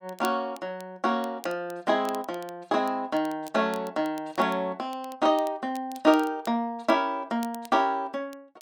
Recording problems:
crackle; vinyl, SNR 23 dB

